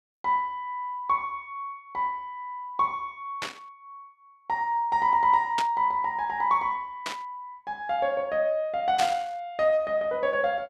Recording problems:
burst of static; 4 times, first at 3.5 s; peak +1 dB vs average level

